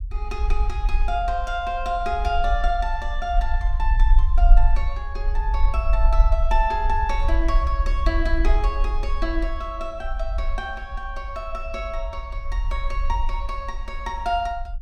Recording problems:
low-frequency rumble; below 48 Hz, SNR -3 dB

